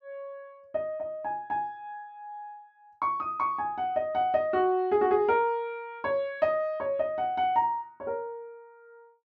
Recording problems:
none

